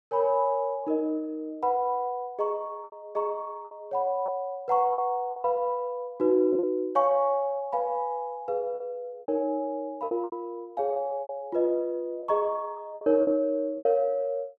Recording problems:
lost packets; 7% of the sound replaced, filled with repeated pitch periods

